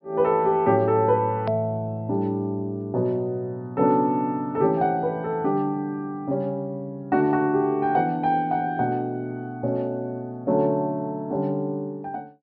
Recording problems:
low-pass filter; nothing above 5.3 kHz
hard cut with a click; at 1.5 s

